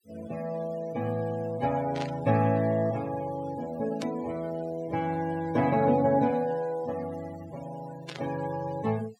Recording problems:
noise reduction artefacts; signal-to-artefact ratio 18 dB
static burst; at 2 s, at 4 s and at 8 s; peak -5 dB vs average level

